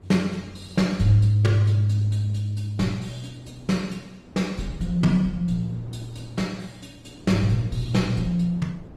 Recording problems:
codec artefacts; Opus, log-spectral distance 3 dB, nothing above 17.7 kHz
wind on the microphone; below 350 Hz, SNR 23 dB

